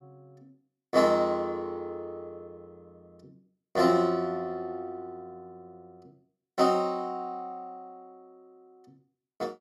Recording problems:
none

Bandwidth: 15 kHz